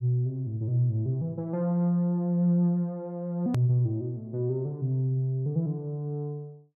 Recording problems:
hard cut with a click; at 3.5 s

